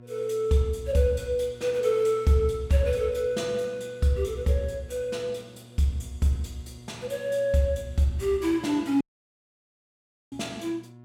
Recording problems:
mains hum; 60 Hz, harmonics up to 1.1 kHz, SNR 22 dB
dropout; at 9 s for 1.5 s

